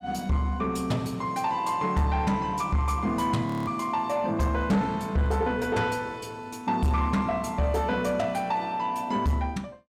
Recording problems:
distorted audio; soft clipping, signal-to-distortion ratio 10 dB
audio freezing; at 3.5 s

